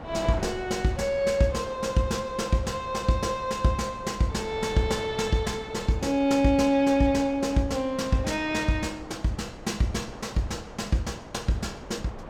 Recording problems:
wind on the microphone; below 860 Hz, SNR 15 dB

